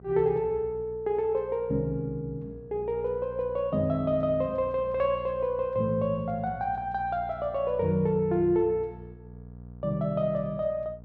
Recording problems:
hum; 60 Hz, harmonics up to 720 Hz, SNR 18 dB

